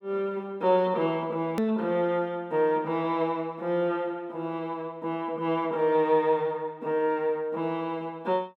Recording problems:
edit click; at 1.5 s

